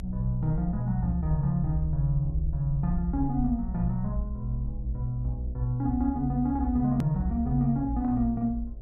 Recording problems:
hum; 60 Hz, harmonics up to 720 Hz, SNR 28 dB
low-frequency rumble; below 56 Hz, strongest tone 54 Hz, SNR 8 dB
click at an edit; at 7 s

